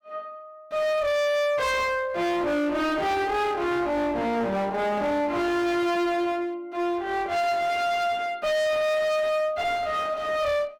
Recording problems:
distortion; hard clipping, uneven, signal-to-distortion ratio 4 dB

